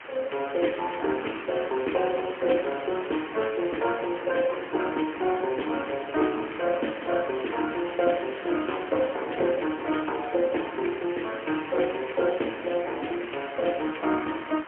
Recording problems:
phone line; 260 Hz to 3.2 kHz, AMR-NB, then MP3
background hiss; SNR 12 dB
wind on the microphone; below 1 kHz, SNR 22 dB

